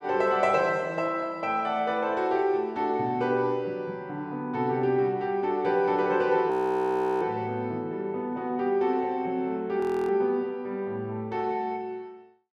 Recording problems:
frozen audio; at 6.5 s for 0.5 s and at 10 s

